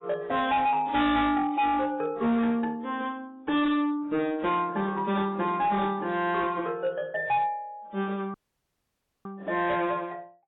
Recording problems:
lossy codec; AAC, log-spectral distance 2 dB, nothing above 3.8 kHz
distorted audio; hard clipping, signal-to-distortion ratio 7 dB
dropout; at 8.5 s for 1 s

